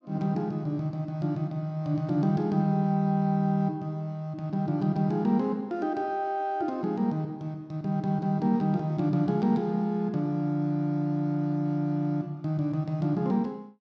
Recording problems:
none

